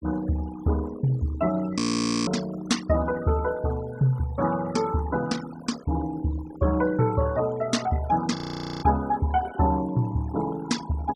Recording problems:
noise reduction artefacts; signal-to-artefact ratio 15 dB
audio freezing; at 2 s and at 8.5 s

